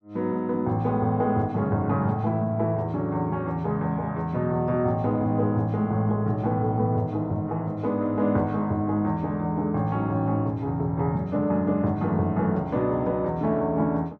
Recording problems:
none

